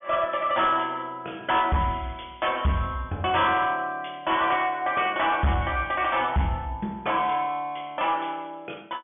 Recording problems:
treble cut off; nothing above 3.5 kHz
distorted audio; soft clipping, signal-to-distortion ratio 11 dB

